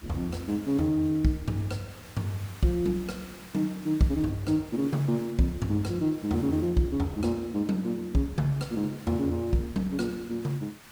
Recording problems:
hiss; SNR 20 dB

